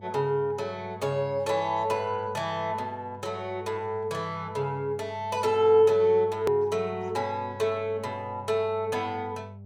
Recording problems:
hum; 50 Hz, harmonics up to 600 Hz, SNR 17 dB
hard cut with a click; at 6.5 s

